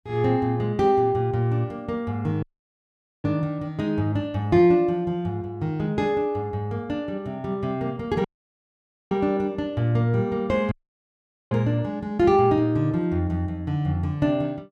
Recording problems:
dropout; at 2.5 s for 1 s, at 8.5 s for 1 s and at 11 s for 1 s

